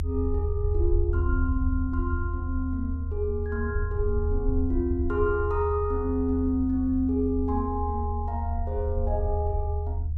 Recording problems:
rumble; below 80 Hz, SNR 0 dB

